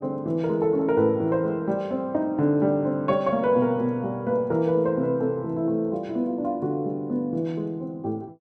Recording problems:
none

